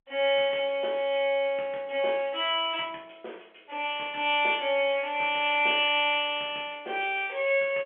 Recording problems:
phone line; 300 Hz to 3.5 kHz, G.711

